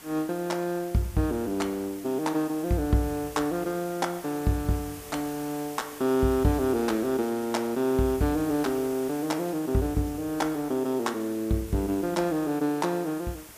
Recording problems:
hiss; slope -2 dB per octave, SNR 16 dB

